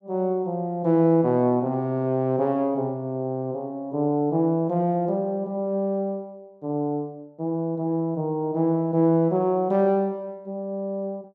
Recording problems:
none

